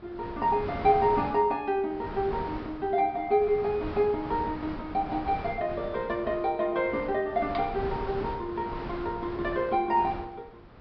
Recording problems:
treble missing; nothing above 5.5 kHz
wind noise; below 950 Hz, SNR 12 dB

